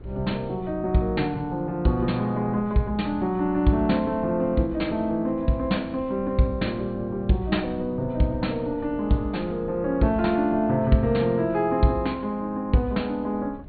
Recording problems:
treble missing; nothing above 4.5 kHz
wind on the microphone; below 250 Hz, SNR 19 dB

